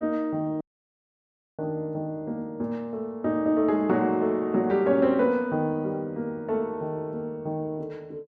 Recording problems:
dropout; at 0.5 s for 1 s

